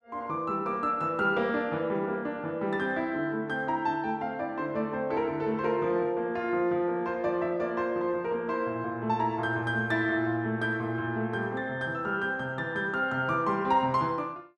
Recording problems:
none

